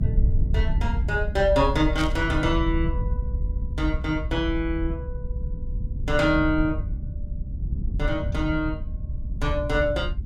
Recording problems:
rumble; below 80 Hz, SNR 3 dB
burst of static; at 2 s; peak -4 dB vs average level

